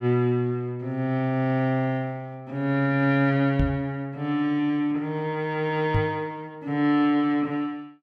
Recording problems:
microphone thump; at 3.5 s and at 6 s; peak +3 dB vs average level

